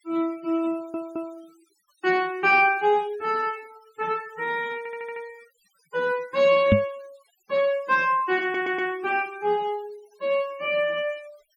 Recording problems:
noise reduction artefacts; signal-to-artefact ratio 24 dB
stutter; at 0.5 s, at 5 s and at 8.5 s
microphone thump; at 6.5 s; peak +8 dB vs average level

